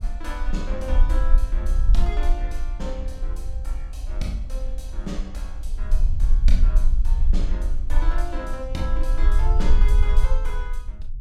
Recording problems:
rumble; below 42 Hz, strongest tone 20 Hz, SNR -9 dB

